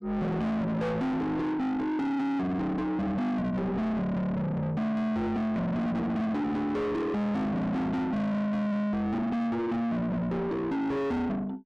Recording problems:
distorted audio; soft clipping, signal-to-distortion ratio 5 dB

